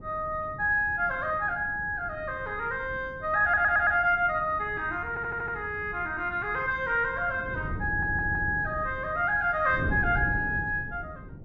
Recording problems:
wind noise; below 200 Hz, SNR 13 dB
stutter; at 3.5 s, at 5 s and at 8 s

